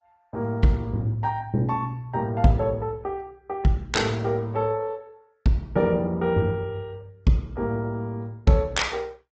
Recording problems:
low-pass filter; nothing above 7.6 kHz
lossy codec; Opus, log-spectral distance 2 dB

